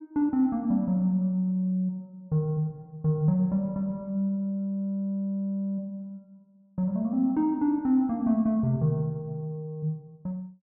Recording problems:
none

